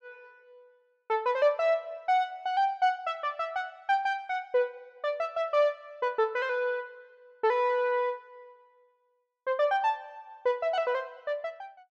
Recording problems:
none

